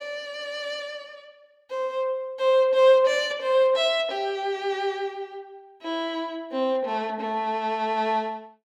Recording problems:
none

